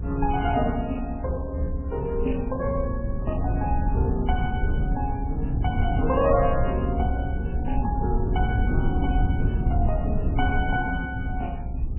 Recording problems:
codec artefacts; MP3, log-spectral distance 2 dB, nothing above 2.9 kHz
low-frequency rumble; below 110 Hz, SNR 0 dB

